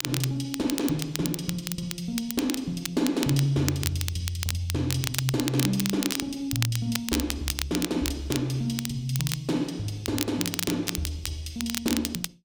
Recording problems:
crackling; vinyl, SNR 4 dB

